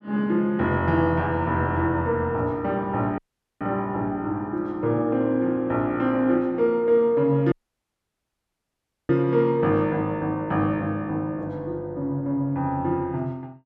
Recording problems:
dropout; at 3 s and at 7.5 s for 1.5 s

